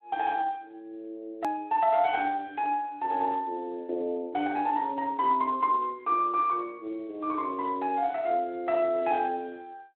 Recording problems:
telephone audio; 260 Hz to 3.4 kHz, Speex
click at an edit; at 1.5 s

